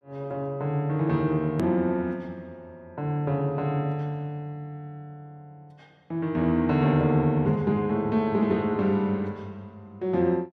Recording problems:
hard cut with a click; at 1.5 s

